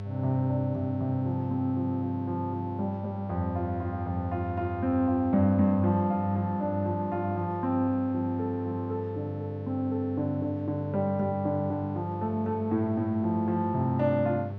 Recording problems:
hum; 50 Hz, harmonics up to 1.1 kHz, SNR 8 dB

